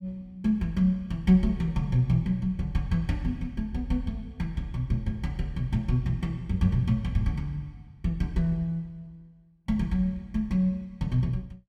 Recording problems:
none

